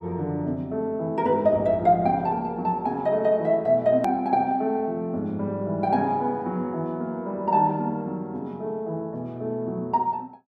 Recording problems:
edit click; at 4 s

